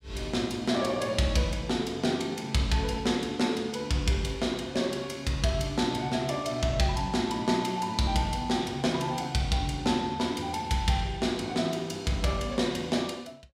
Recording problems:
none

